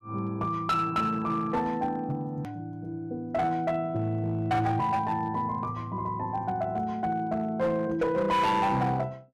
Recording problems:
distorted audio; hard clipping, uneven, signal-to-distortion ratio 12 dB
click at an edit; at 2.5 s

